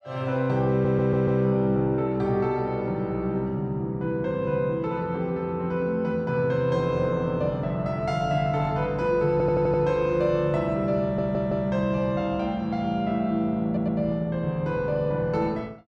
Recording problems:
audio stuttering; 4 times, first at 0.5 s

